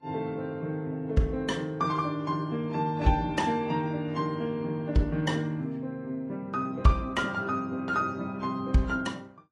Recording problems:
codec artefacts; AAC, then Vorbis, log-spectral distance 2 dB

